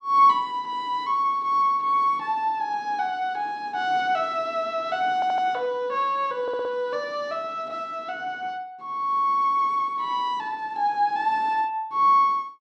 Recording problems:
stutter; at 5 s and at 6.5 s

